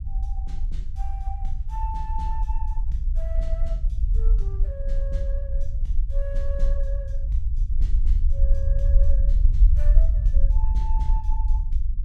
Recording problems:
rumble; below 50 Hz, SNR -15 dB

